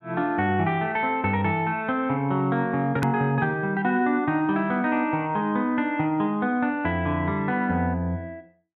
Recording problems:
edit click; at 3 s

